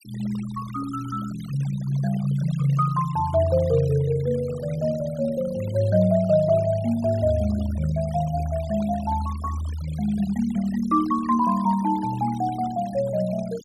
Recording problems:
denoising artefacts; signal-to-artefact ratio 19 dB

